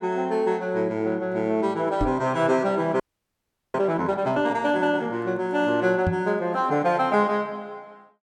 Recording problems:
microphone bump; at 2 s and at 6 s; peak +2 dB vs average level
audio freezing; at 3 s for 0.5 s

